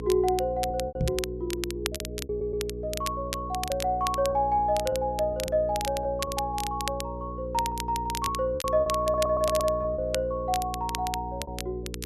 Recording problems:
electrical hum; 60 Hz, harmonics up to 480 Hz, SNR 9 dB
crackle; vinyl, SNR 9 dB
lost packets; 6% of the sound replaced, filled with repeated pitch periods
microphone bump; at 1 s; peak +4 dB vs average level
audio stuttering; at 2.5 s and at 9 s

